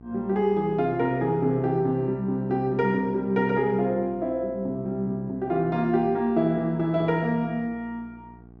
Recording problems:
hum; 60 Hz, harmonics up to 1.1 kHz, SNR 23 dB

